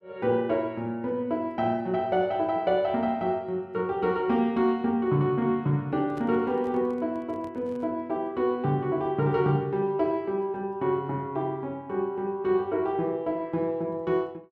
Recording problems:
handling noise; from 6 to 8 s; peak -12 dB vs average level

